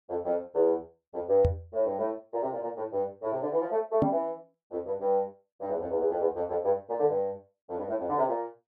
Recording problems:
knock on the microphone; at 1.5 s and at 4 s; peak +6 dB vs average level

